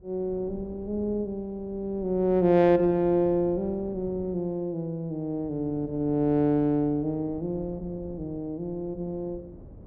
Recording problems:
wind on the microphone; below 310 Hz, SNR 19 dB

